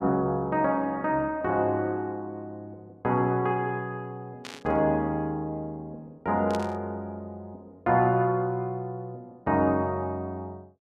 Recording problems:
static burst; at 4.5 s and at 6.5 s; peak -7 dB vs average level

